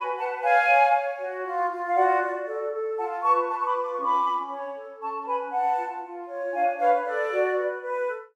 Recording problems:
none

